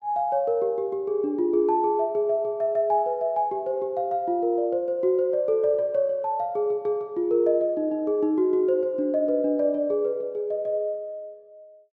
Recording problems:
none

